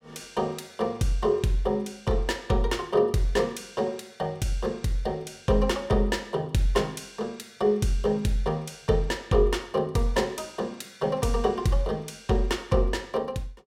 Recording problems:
none

